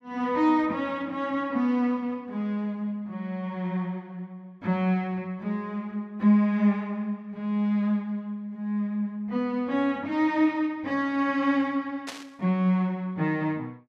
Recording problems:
static burst; at 12 s; peak -5 dB vs average level

